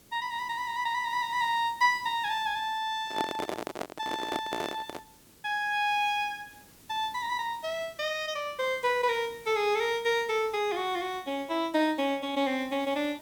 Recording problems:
background hiss; SNR 24 dB
microphone handling noise; from 3 to 5 s; peak +1 dB vs average level

